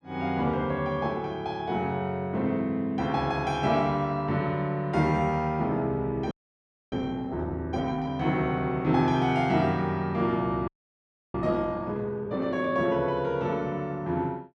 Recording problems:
frozen audio; at 6.5 s for 0.5 s and at 11 s for 0.5 s

